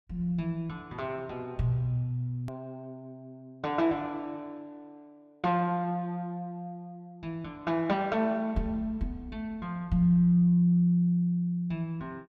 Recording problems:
edit click; at 2.5 s

